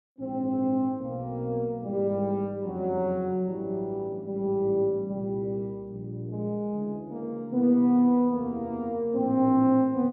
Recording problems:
none

